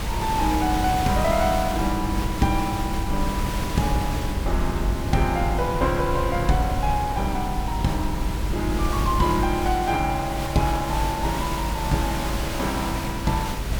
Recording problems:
background hiss; slope -3 dB per octave, SNR 7 dB
low-frequency rumble; below 110 Hz, SNR 4 dB

